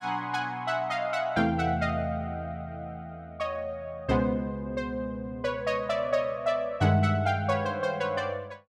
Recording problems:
none

